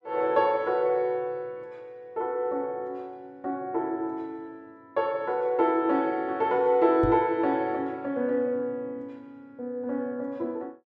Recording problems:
knock on the microphone; at 7 s; peak +1 dB vs average level

